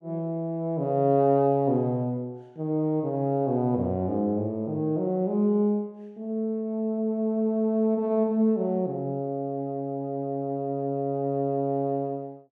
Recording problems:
none

